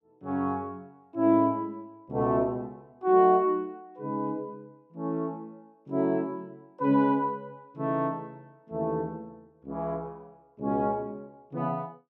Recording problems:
none

